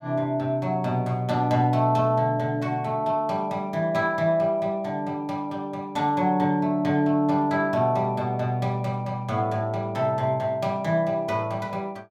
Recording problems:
none

